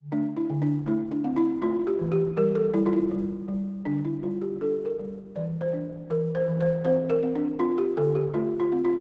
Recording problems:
lossy codec; Opus, log-spectral distance 2 dB, nothing above 7.3 kHz

